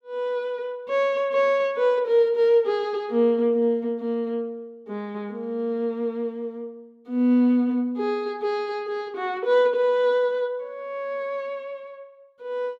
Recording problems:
none

